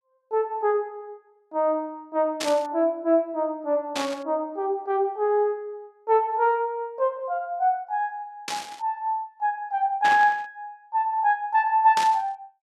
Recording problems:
burst of static; 5 times, first at 2.5 s; peak -1 dB vs average level

